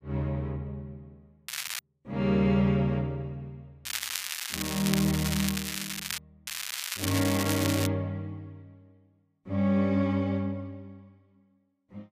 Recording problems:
crackle; at 1.5 s, from 4 to 6 s and from 6.5 to 8 s; loose cable, SNR 4 dB

